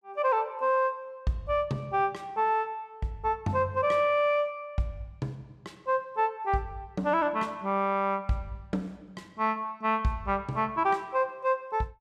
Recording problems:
none

